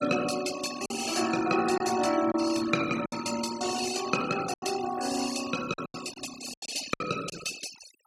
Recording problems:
denoising artefacts; signal-to-artefact ratio 10 dB
lost packets; 7% of the sound replaced, filled with silence

